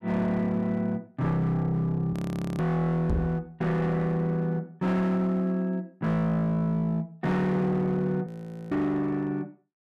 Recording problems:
distorted audio; hard clipping, uneven, signal-to-distortion ratio 11 dB
audio freezing; at 2 s and at 8.5 s
microphone bump; at 3 s; peak +2 dB vs average level

